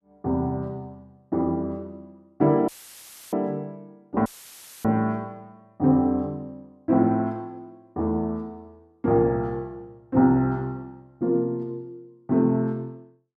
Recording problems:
dropout; at 2.5 s for 0.5 s and at 4.5 s for 0.5 s; filled with static

